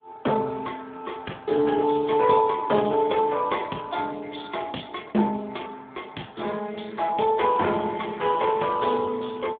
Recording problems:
telephone audio; 170 Hz to 3.5 kHz, Speex

